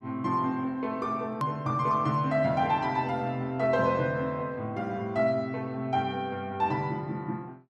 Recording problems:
hard cut with a click; at 1.5 s

